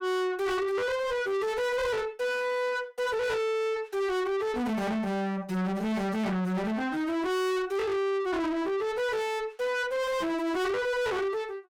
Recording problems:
distorted audio; soft clipping, signal-to-distortion ratio 7 dB

